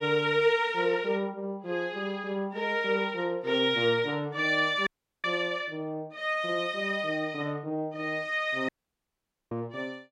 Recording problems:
audio cutting out; at 5 s and at 8.5 s for 1 s

